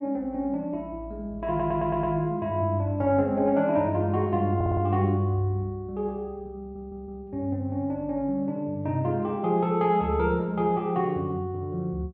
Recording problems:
stutter; at 1.5 s, at 4.5 s and at 6.5 s

